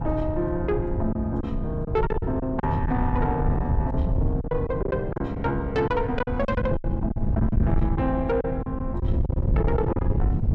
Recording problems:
distorted audio; soft clipping, signal-to-distortion ratio 11 dB
wind on the microphone; below 130 Hz, SNR 1 dB
packet loss; 10% of the sound replaced, filled with silence

